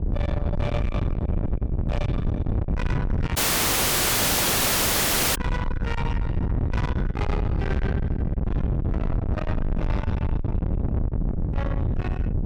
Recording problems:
distortion; soft clipping, signal-to-distortion ratio 8 dB
wind on the microphone; below 170 Hz, SNR -6 dB
audio cutting out; at 3.5 s for 2 s

